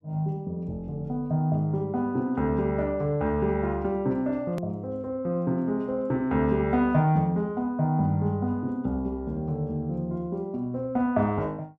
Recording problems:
click at an edit; at 4.5 s

